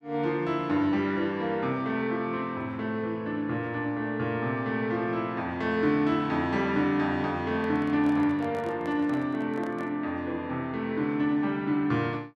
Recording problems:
handling noise; from 7.5 to 10 s; peak -11 dB vs average level

